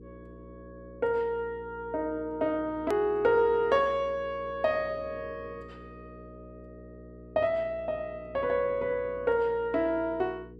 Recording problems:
electrical hum; 60 Hz, harmonics up to 480 Hz, SNR 19 dB
click at an edit; at 3 s

